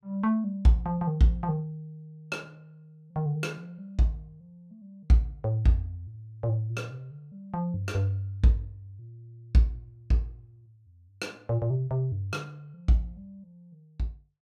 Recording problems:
none

